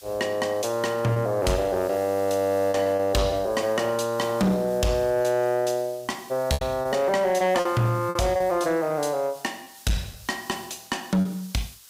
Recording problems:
distortion; soft clipping, signal-to-distortion ratio 11 dB
hiss; SNR 21 dB
packet loss; 5% of the sound replaced, filled with repeated pitch periods

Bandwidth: 15.5 kHz